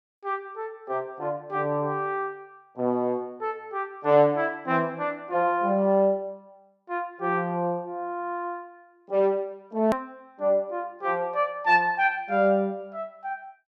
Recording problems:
edit click; at 10 s

